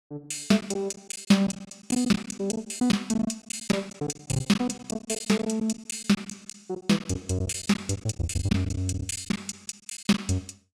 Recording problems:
packet loss; 13% of the sound replaced, filled with silence

